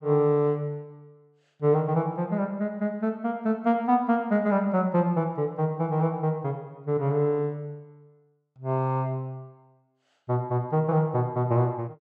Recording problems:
none

